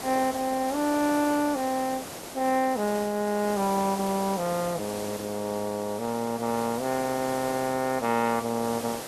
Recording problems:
background hiss; slope -4 dB per octave, SNR 10 dB

